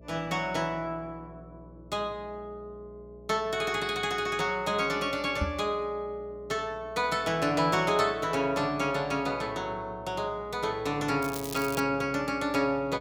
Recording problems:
mains hum; 60 Hz, harmonics up to 660 Hz, SNR 22 dB
knock on the microphone; at 5.5 s; peak +2 dB vs average level
crackle; at 11 s; loose cable, SNR 11 dB

